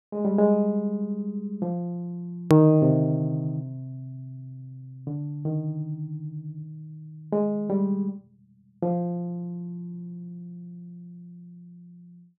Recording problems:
hard cut with a click; at 2.5 s

